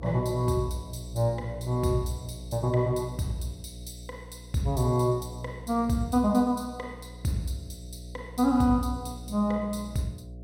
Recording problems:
mains hum; 60 Hz, harmonics up to 660 Hz, SNR 14 dB

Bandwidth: 16 kHz